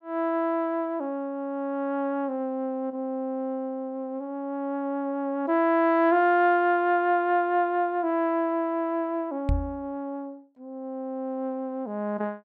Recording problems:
knock on the microphone; at 9.5 s; peak +4 dB vs average level

